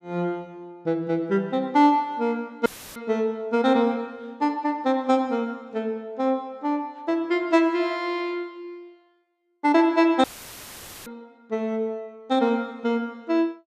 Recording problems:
audio cutting out; at 2.5 s and at 10 s for 1 s; filled with static

